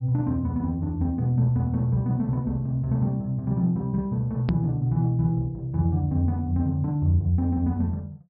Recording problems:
treble missing; nothing above 5.5 kHz
hard cut with a click; at 4.5 s

